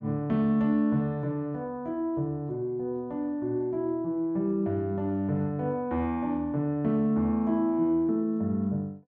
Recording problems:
treble cut off; nothing above 7.1 kHz

